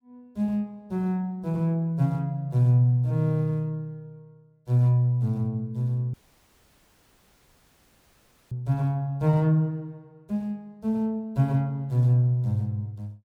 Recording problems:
audio cutting out; at 6 s for 2.5 s

